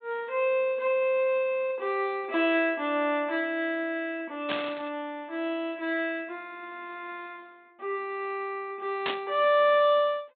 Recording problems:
treble cut off; nothing above 4 kHz
burst of static; at 4.5 s and at 9 s; peak 0 dB vs average level

